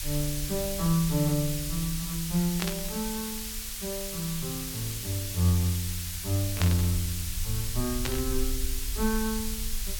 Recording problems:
background hiss; slope +4 dB per octave, SNR 4 dB
rumble; below 56 Hz, strongest tone 22 Hz, SNR 10 dB
static burst; at 2.5 s, at 6.5 s and at 8 s; peak +3 dB vs average level

